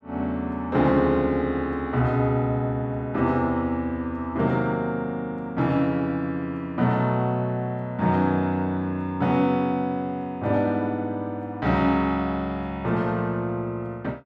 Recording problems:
none

